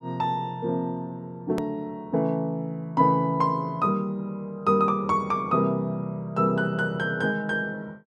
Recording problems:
edit click; at 1.5 s

